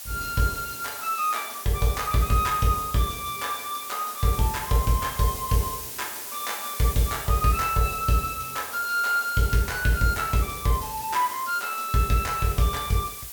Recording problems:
background hiss; slope +2 dB per octave, SNR 9 dB

